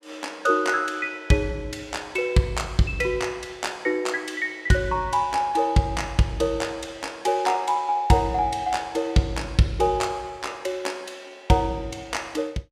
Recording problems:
none

